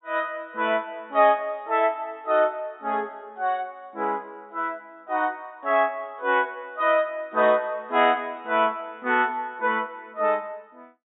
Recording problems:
treble missing; nothing above 4 kHz

